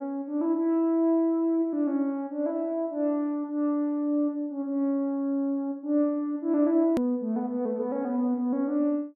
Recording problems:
click at an edit; at 7 s

